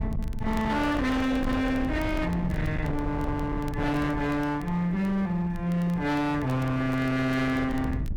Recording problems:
distorted audio; hard clipping, uneven, signal-to-distortion ratio 7 dB
low-frequency rumble; below 190 Hz, SNR 8 dB
crackling; vinyl, SNR 27 dB

